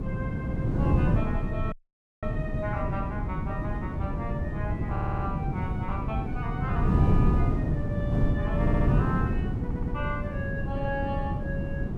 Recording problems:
wind on the microphone; below 200 Hz, SNR -8 dB
dropout; at 1.5 s for 0.5 s
stutter; at 5 s, at 8.5 s and at 9.5 s

